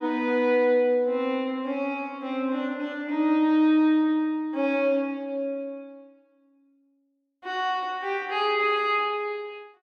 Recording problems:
none

